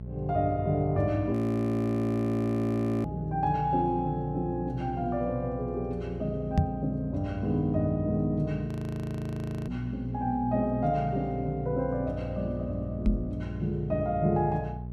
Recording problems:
hum; 60 Hz, harmonics up to 600 Hz, SNR 9 dB
audio freezing; at 1.5 s for 1.5 s and at 8.5 s for 1 s
microphone bump; at 6.5 s and at 13 s; peak +8 dB vs average level

